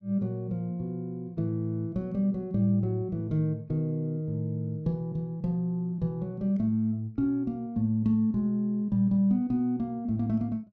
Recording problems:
none

